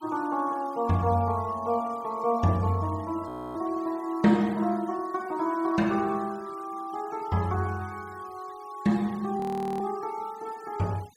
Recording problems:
denoising artefacts; signal-to-artefact ratio 25 dB
audio freezing; at 3.5 s and at 9.5 s

